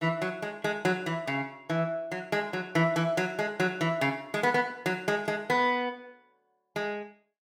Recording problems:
none

